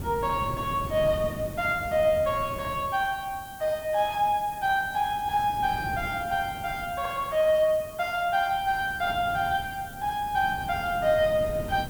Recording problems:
hiss; SNR 20 dB
wind on the microphone; below 270 Hz, SNR 14 dB

